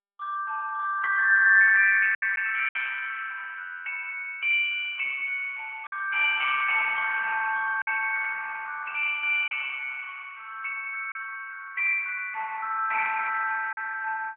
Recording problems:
telephone audio; 900 Hz to 2.6 kHz, AMR-NB
packet loss; 2% of the sound replaced, filled with silence

